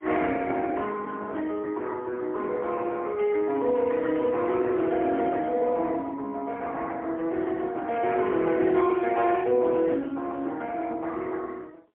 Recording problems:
telephone audio; 280 Hz to 3.3 kHz, AMR-NB, then MP3

